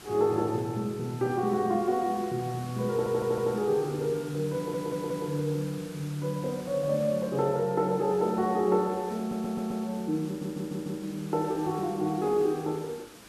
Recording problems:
background hiss; slope -3 dB per octave, SNR 18 dB
stutter; 4 times, first at 3 s

